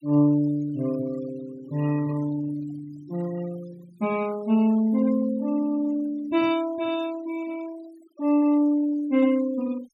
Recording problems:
noise reduction artefacts; signal-to-artefact ratio 22 dB

